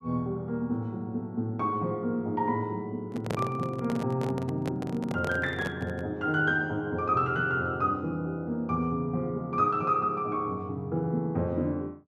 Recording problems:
microphone handling noise; from 3 to 6 s; peak +1 dB vs average level

